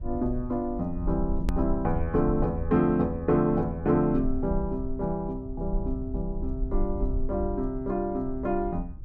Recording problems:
low-frequency rumble; below 58 Hz, SNR 8 dB
click at an edit; at 1.5 s

